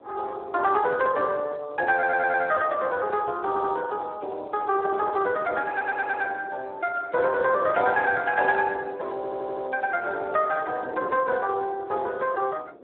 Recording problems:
telephone audio; 320 Hz to 3.1 kHz, Speex
wind noise; below 580 Hz, SNR 19 dB
stutter; 4 times, first at 2 s

